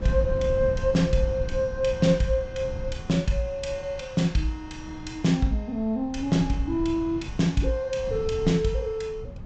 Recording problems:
treble missing; nothing above 8 kHz
wind noise; below 130 Hz, SNR 11 dB

